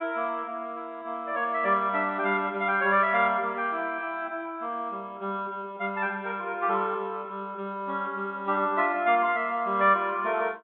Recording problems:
treble cut off; nothing above 3.7 kHz

